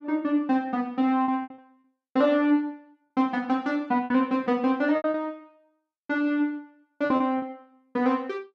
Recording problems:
lost packets; 7% of the sound replaced, filled with repeated pitch periods

